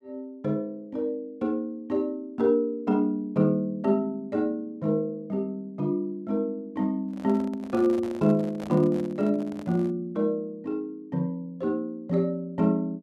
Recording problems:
microphone handling noise; from 7 to 10 s; peak -9 dB vs average level

